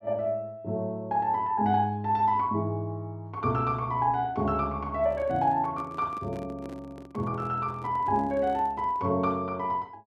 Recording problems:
microphone handling noise; from 5 to 9 s; peak -11 dB vs average level

